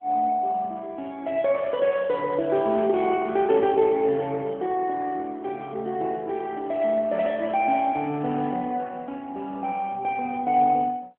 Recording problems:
phone line; 240 Hz to 3.3 kHz, AMR-NB

